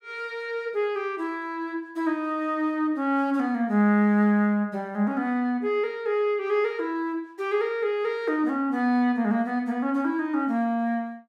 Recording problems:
none

